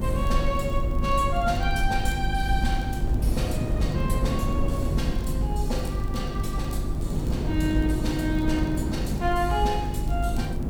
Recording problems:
hum; 50 Hz, harmonics up to 350 Hz, SNR 4 dB
background hiss; slope -8 dB per octave, SNR 19 dB
rumble; below 52 Hz, strongest tone 20 Hz, SNR 5 dB
wind on the microphone; below 270 Hz, SNR 3 dB
crackling; vinyl, SNR 27 dB

